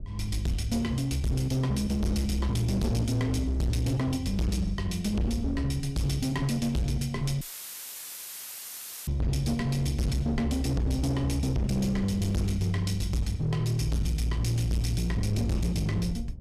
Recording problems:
distorted audio; hard clipping, signal-to-distortion ratio 6 dB
rumble; below 120 Hz, SNR 15 dB
dropout; at 7.5 s for 1.5 s; filled with static

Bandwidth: 14.5 kHz